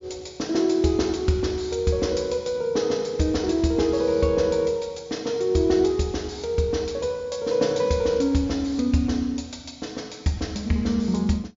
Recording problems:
treble cut off; nothing above 7.2 kHz

